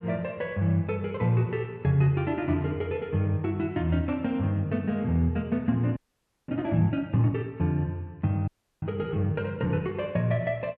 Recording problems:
audio freezing; at 6 s for 0.5 s and at 8.5 s

